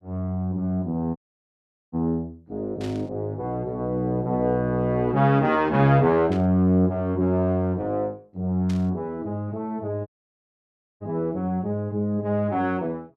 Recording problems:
audio cutting out; at 1 s for 1 s and at 10 s for 1 s
static burst; at 3 s, at 6.5 s and at 8.5 s; peak -12 dB vs average level

